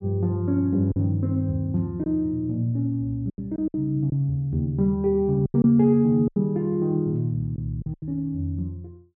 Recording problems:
packet loss; 6% of the sound replaced, filled with silence

